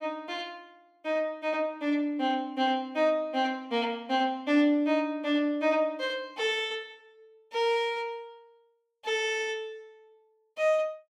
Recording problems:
none

